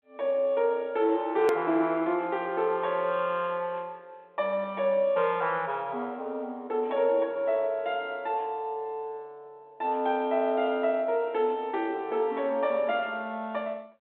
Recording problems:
telephone audio; 260 Hz to 3.6 kHz, G.726
hard cut with a click; at 1.5 s

